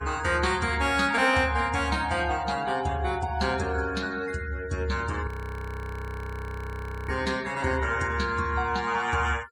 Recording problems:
noise reduction artefacts; signal-to-artefact ratio 19 dB
audio freezing; at 5.5 s for 2 s

